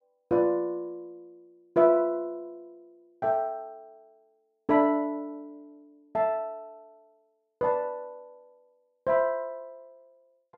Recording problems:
none

